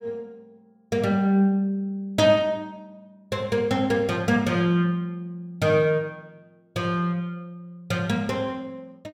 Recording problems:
none

